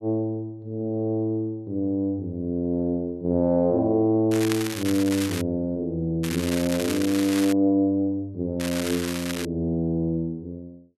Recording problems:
crackle; from 4.5 to 5.5 s, from 6 to 7.5 s and at 8.5 s; loose cable, SNR 9 dB

